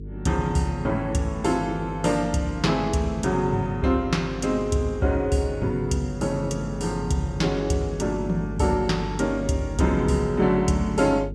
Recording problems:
hum; 50 Hz, harmonics up to 450 Hz, SNR 11 dB

